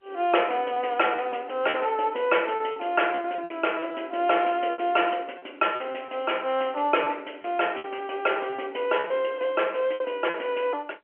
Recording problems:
phone line; 280 Hz to 3.2 kHz, G.711
packet loss; 8% of the sound replaced, filled with repeated pitch periods

